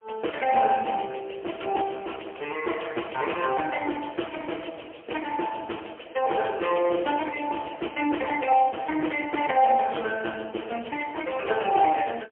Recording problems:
telephone audio; 260 Hz to 3.2 kHz, AMR-NB, then MP3

